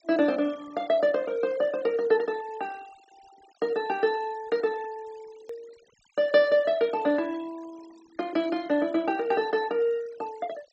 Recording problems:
low-pass filter; nothing above 8 kHz
denoising artefacts; signal-to-artefact ratio 24 dB
click at an edit; at 5.5 s

